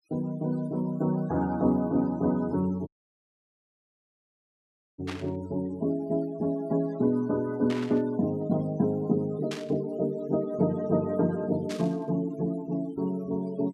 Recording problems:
denoising artefacts; signal-to-artefact ratio 22 dB
audio cutting out; at 3 s for 2 s
burst of static; 4 times, first at 5 s; peak -5 dB vs average level

